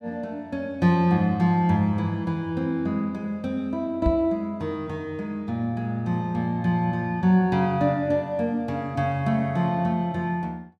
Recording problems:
microphone bump; at 4 s; peak +3 dB vs average level

